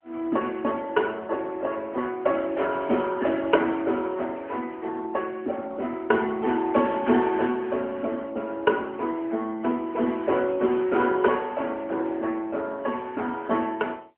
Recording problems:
telephone audio; 190 Hz to 3.4 kHz, AMR-NB

